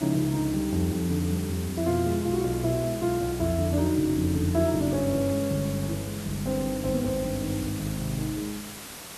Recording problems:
hiss; slope -2 dB per octave, SNR 12 dB

